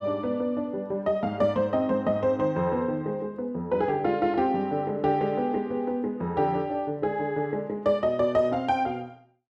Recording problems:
none

